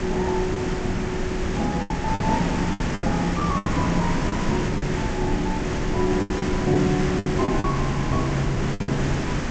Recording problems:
lossy codec; G.722, log-spectral distance 5 dB
hiss; slope -5 dB per octave, SNR 1 dB
rumble; below 56 Hz, SNR 10 dB
packet loss; 9% of the sound replaced, filled with the last packet

